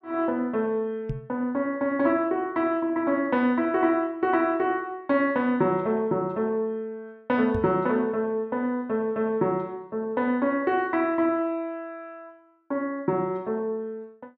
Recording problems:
microphone thump; at 1 s and at 7.5 s; peak -1 dB vs average level

